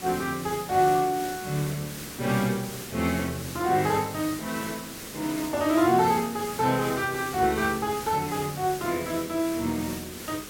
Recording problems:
hiss; SNR 11 dB

